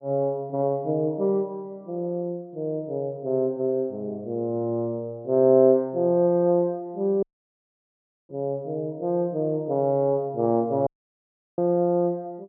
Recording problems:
audio cutting out; at 7 s for 1 s and at 11 s for 0.5 s

